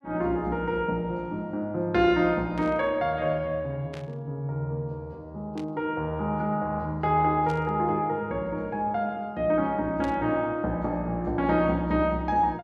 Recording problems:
static burst; 5 times, first at 2.5 s; peak -13 dB vs average level

